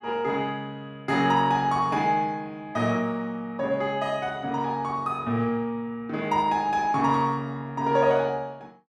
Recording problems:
none

